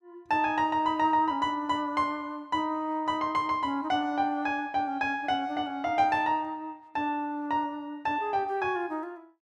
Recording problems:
none

